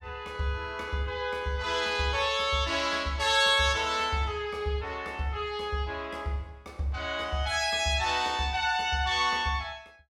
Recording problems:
none

